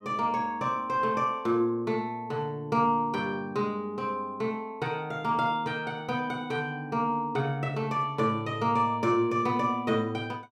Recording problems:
none

